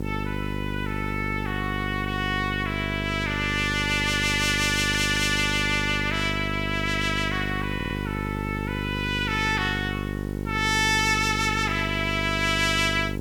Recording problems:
electrical hum; 50 Hz, harmonics up to 950 Hz, SNR 6 dB
hiss; slope -1 dB per octave, SNR 27 dB
stutter; at 4.5 s and at 8 s

